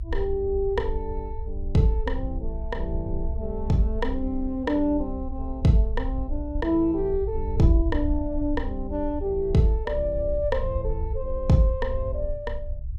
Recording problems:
low-frequency rumble; below 64 Hz, strongest tone 22 Hz, SNR 7 dB

